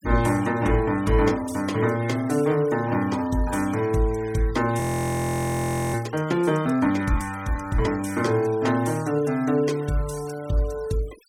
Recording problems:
noise reduction artefacts; signal-to-artefact ratio 19 dB
audio freezing; at 5 s for 1 s

